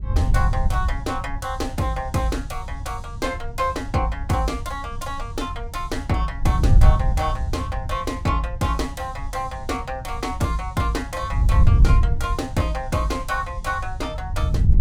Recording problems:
wind noise; below 94 Hz, SNR -1 dB

